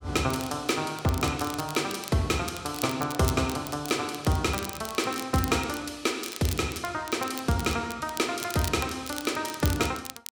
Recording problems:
crackling; vinyl, SNR 11 dB

